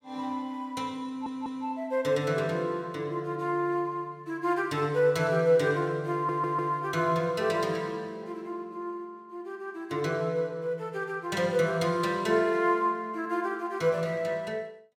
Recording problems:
stutter; at 1 s and at 6 s

